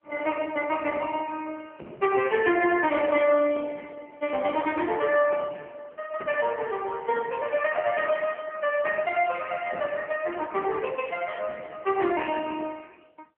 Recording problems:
telephone audio; 240 Hz to 3.1 kHz, AMR-NB

